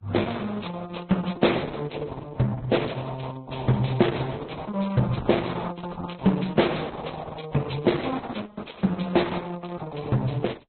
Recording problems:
codec artefacts; Opus, then Vorbis, log-spectral distance 6 dB, nothing above 4.1 kHz

